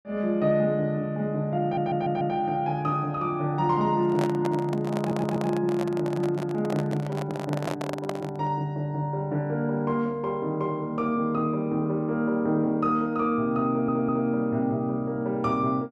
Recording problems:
audio stuttering; at 1.5 s, at 5 s and at 14 s
microphone handling noise; from 4 to 8.5 s; peak -1 dB vs average level

